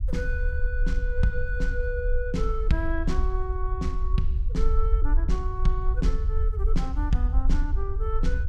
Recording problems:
low-frequency rumble; below 54 Hz, SNR -4 dB

